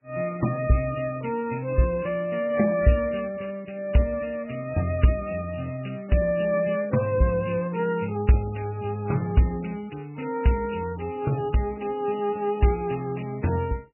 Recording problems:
lossy compression; MP3, log-spectral distance 5 dB, nothing above 2.9 kHz

